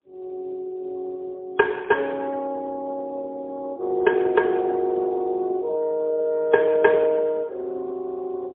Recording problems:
telephone audio; 260 Hz to 2.2 kHz, AMR-NB, then MP3

